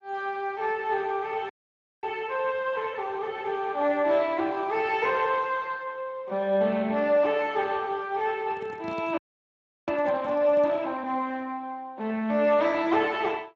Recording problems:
lossy codec; Speex, log-spectral distance 3 dB
audio freezing; at 1.5 s for 0.5 s and at 9 s for 0.5 s
handling noise; from 8.5 to 11 s; peak -11 dB vs average level

